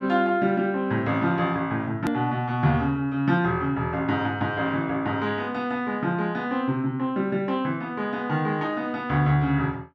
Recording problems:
hard cut with a click; at 2 s

